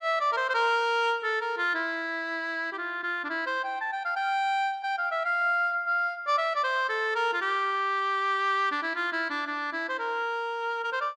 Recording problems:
none

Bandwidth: 12.5 kHz